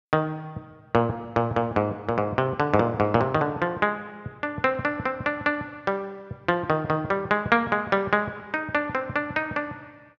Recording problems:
none

